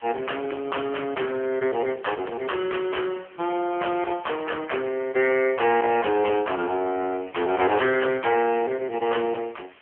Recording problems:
phone line; 280 Hz to 3.2 kHz, AMR-NB
distortion; hard clipping, uneven, signal-to-distortion ratio 10 dB
hiss; SNR 27 dB

